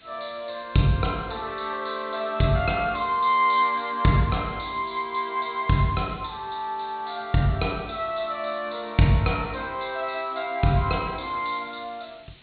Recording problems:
low-pass filter; nothing above 4.3 kHz
hiss; SNR 27 dB

